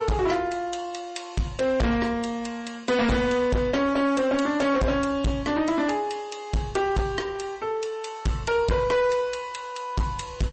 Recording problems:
codec artefacts; MP3, log-spectral distance 3 dB, nothing above 8.2 kHz
distortion; hard clipping, uneven, signal-to-distortion ratio 8 dB

